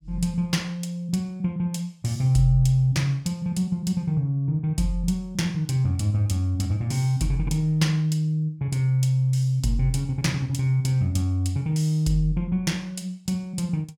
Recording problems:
none

